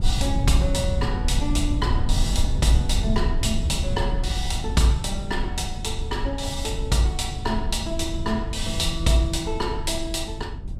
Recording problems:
rumble; below 88 Hz, SNR 2 dB

